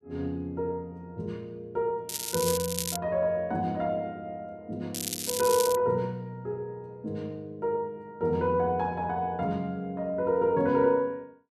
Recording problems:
crackle; at 2 s and at 5 s; loose cable, SNR 3 dB

